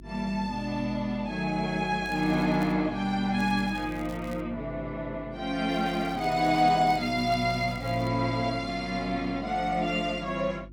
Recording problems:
hum; 50 Hz, harmonics up to 350 Hz, SNR 18 dB
crackle; at 2 s, from 3.5 to 4.5 s and from 5.5 to 8 s; loose cable, SNR 24 dB

